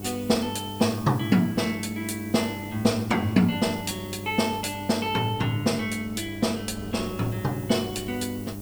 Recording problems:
electrical hum; 50 Hz, harmonics up to 800 Hz, SNR 11 dB
hiss; SNR 19 dB
wind on the microphone; below 460 Hz, SNR 21 dB

